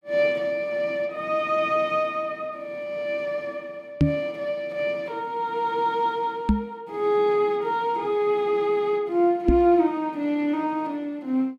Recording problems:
knock on the microphone; at 4 s, at 6.5 s and at 9.5 s; peak +9 dB vs average level

